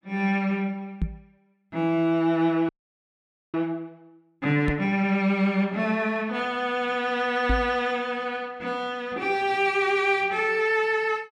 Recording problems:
microphone thump; at 1 s, at 4.5 s and at 7.5 s; peak +2 dB vs average level
audio freezing; at 2.5 s for 1 s

